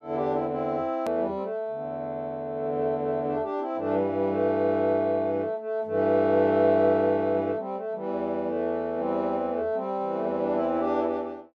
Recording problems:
edit click; at 1 s

